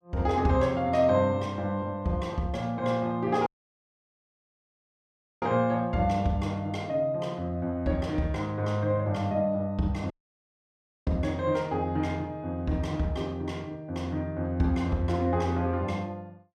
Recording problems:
audio cutting out; at 3.5 s for 2 s and at 10 s for 1 s

